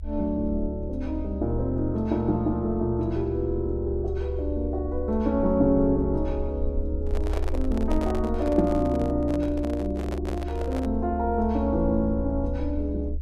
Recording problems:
low-frequency rumble; below 72 Hz, strongest tone 70 Hz, SNR 6 dB
microphone handling noise; from 7 to 11 s; peak -3 dB vs average level

